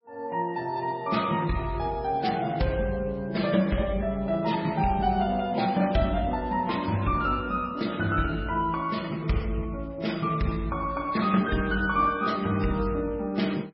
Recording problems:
lossy codec; MP3, then MP3, log-spectral distance 3 dB, nothing above 5.5 kHz

